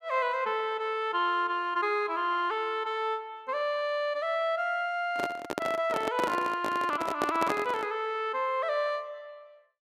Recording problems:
microphone handling noise; from 5 to 8 s; peak +3 dB vs average level

